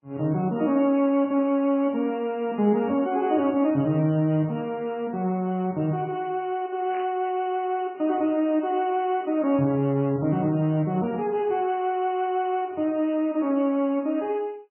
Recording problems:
codec artefacts; MP3, log-spectral distance 2 dB, nothing above 2.6 kHz
static burst; at 7 s; peak -13 dB vs average level

